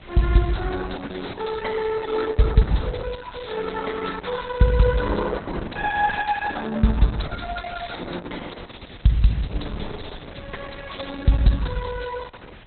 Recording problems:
codec artefacts; Opus, log-spectral distance 8 dB, nothing above 4 kHz
background hiss; SNR 23 dB
wind on the microphone; below 240 Hz, SNR 20 dB

